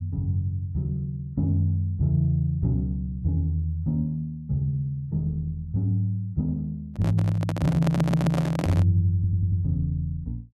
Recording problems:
microphone handling noise; from 7 to 9 s; peak 0 dB vs average level
stutter; at 8 s and at 9 s

